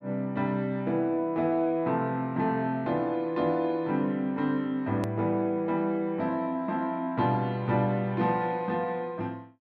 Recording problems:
hard cut with a click; at 5 s

